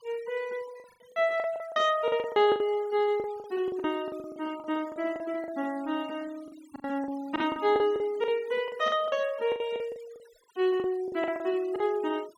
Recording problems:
noise reduction artefacts; signal-to-artefact ratio 23 dB
packet loss; 15% of the sound replaced, filled with the last packet

